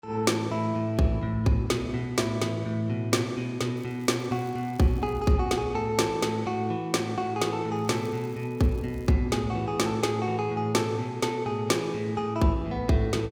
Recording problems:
crackle; from 4 to 5.5 s and from 8 to 9 s; loose cable, SNR 29 dB

